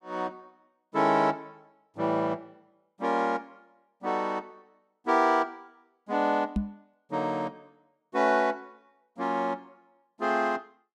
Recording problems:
microphone bump; at 6.5 s; peak +4 dB vs average level

